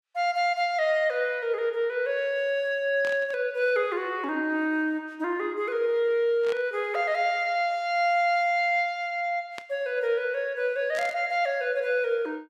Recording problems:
burst of static; 4 times, first at 3 s; peak -9 dB vs average level

